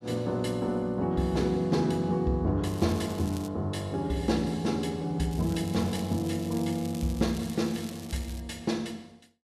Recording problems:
crackling; at 2.5 s and from 5.5 to 8.5 s; loose cable, SNR 17 dB

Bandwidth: 13.5 kHz